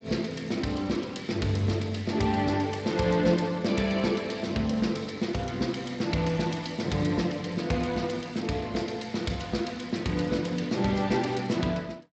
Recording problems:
lossy codec; Speex, log-spectral distance 6 dB, nothing above 7.8 kHz

